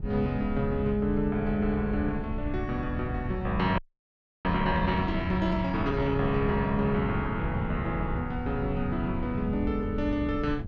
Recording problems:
wind noise; below 120 Hz, SNR 6 dB
audio freezing; at 4 s for 0.5 s

